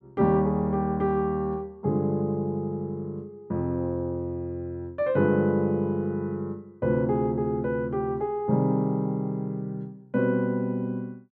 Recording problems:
none

